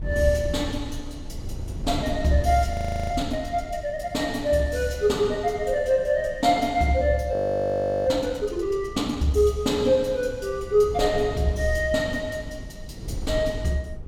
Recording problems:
wind noise; below 120 Hz, SNR 13 dB
frozen audio; at 2.5 s and at 7.5 s for 0.5 s

